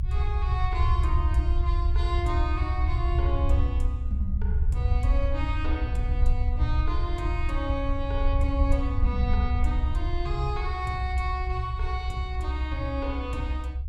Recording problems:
rumble; below 68 Hz, SNR -5 dB

